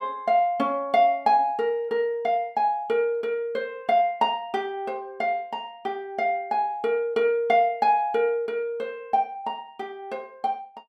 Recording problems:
none

